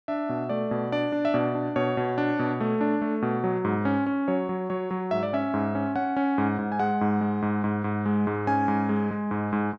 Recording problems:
none

